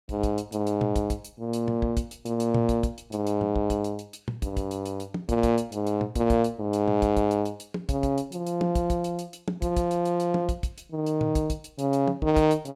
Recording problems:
none

